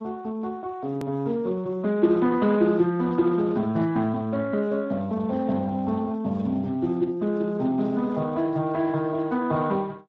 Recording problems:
lossy codec; Speex, log-spectral distance 2 dB, nothing above 13.1 kHz
click at an edit; at 1 s

